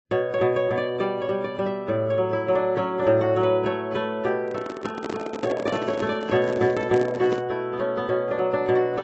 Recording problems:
lossy codec; AAC, log-spectral distance 2 dB, nothing above 7.6 kHz
handling noise; from 4.5 to 7.5 s; peak -1 dB vs average level

